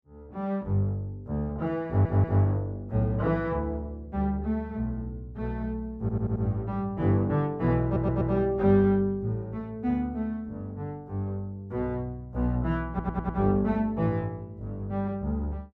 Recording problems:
stutter; 4 times, first at 2 s

